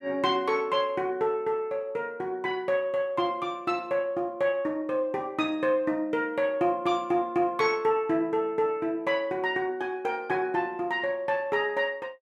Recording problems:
none

